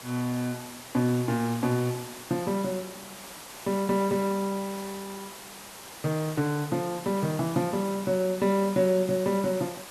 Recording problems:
background hiss; SNR 13 dB

